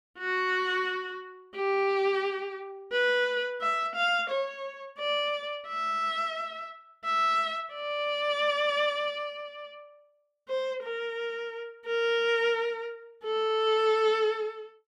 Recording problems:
none

